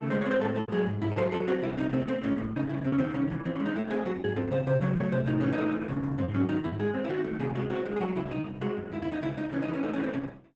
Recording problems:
lossy codec; Opus, log-spectral distance 3 dB, nothing above 8 kHz
lost packets; 6% of the sound replaced, filled with repeated pitch periods

